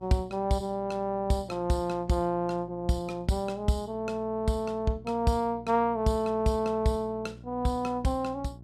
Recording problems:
electrical hum; 60 Hz, harmonics up to 720 Hz, SNR 19 dB

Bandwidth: 14.5 kHz